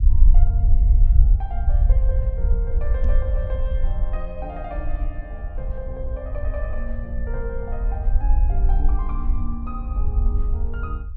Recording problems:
rumble; below 56 Hz, SNR -12 dB
microphone thump; at 3 s; peak +2 dB vs average level

